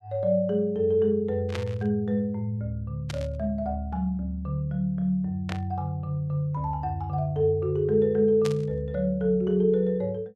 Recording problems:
burst of static; 4 times, first at 1.5 s; peak -5 dB vs average level

